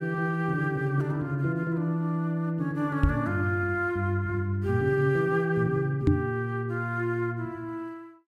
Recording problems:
knock on the microphone; at 3 s and at 6 s; peak +9 dB vs average level

